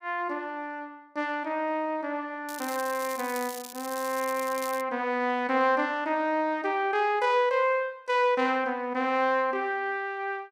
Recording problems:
crackling; from 2.5 to 5 s; loose cable, SNR 13 dB

